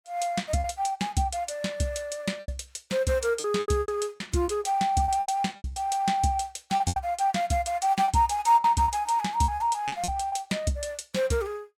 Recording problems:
packet loss; 9% of the sound replaced, filled with repeated pitch periods

